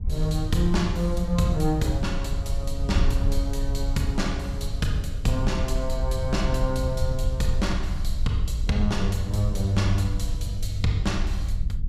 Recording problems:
wind on the microphone; below 72 Hz, SNR 2 dB

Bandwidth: 15 kHz